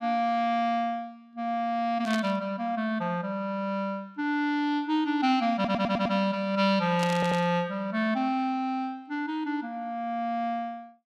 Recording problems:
burst of static; at 2 s and at 7 s; peak -3 dB vs average level
audio stuttering; at 5.5 s and at 7 s

